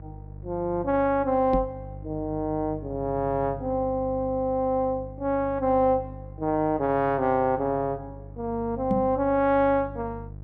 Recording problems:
hum; 50 Hz, harmonics up to 500 Hz, SNR 15 dB
microphone bump; at 1.5 s and at 9 s; peak +3 dB vs average level

